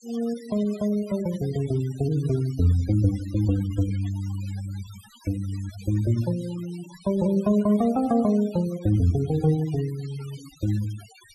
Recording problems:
denoising artefacts; signal-to-artefact ratio 20 dB

